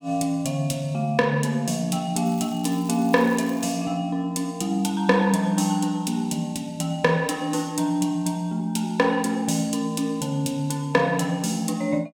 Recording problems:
crackle; from 2.5 to 3.5 s; loose cable, SNR 21 dB

